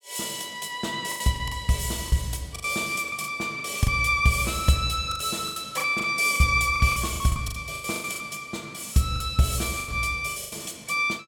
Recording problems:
packet loss; 13% of the sound replaced, filled with the last packet

